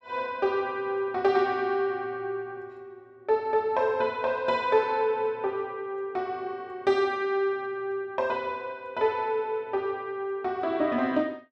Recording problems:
none

